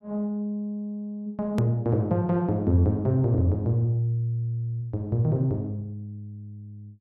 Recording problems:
click at an edit; at 1.5 s

